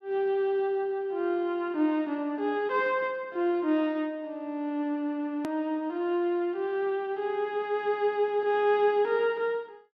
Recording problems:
hard cut with a click; at 5.5 s

